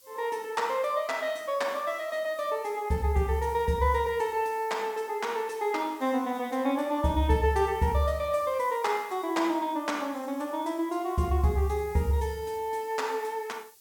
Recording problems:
background hiss; SNR 24 dB

